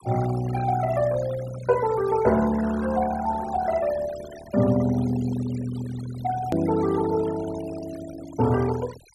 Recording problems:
noise reduction artefacts; signal-to-artefact ratio 15 dB
edit click; at 6.5 s

